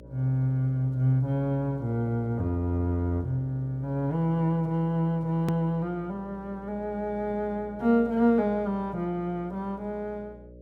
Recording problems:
hum; 60 Hz, harmonics up to 600 Hz, SNR 20 dB
click at an edit; at 5.5 s

